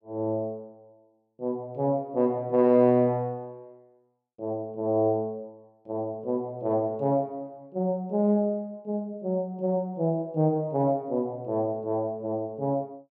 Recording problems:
none

